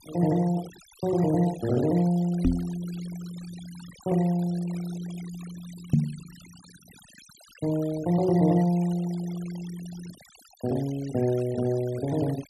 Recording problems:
denoising artefacts; signal-to-artefact ratio 20 dB
knock on the microphone; at 2.5 s and at 6 s; peak +9 dB vs average level

